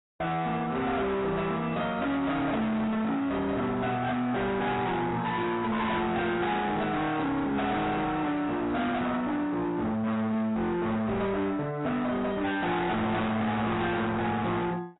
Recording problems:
lossy codec; AAC, log-spectral distance 3 dB, nothing above 3.8 kHz
distortion; hard clipping, signal-to-distortion ratio 6 dB

